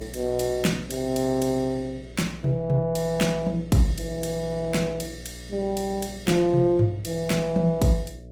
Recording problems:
codec artefacts; Opus, log-spectral distance 3 dB, nothing above 19 kHz
electrical hum; 60 Hz, harmonics up to 660 Hz, SNR 17 dB

